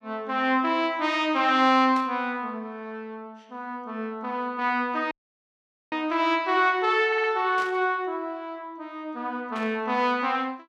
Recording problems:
static burst; at 2 s, at 7.5 s and at 9.5 s; peak -11 dB vs average level
dropout; at 5 s for 1 s
stutter; at 7 s

